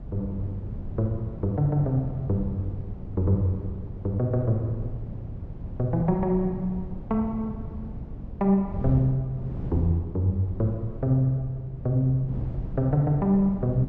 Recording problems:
wind noise; below 160 Hz, SNR 10 dB

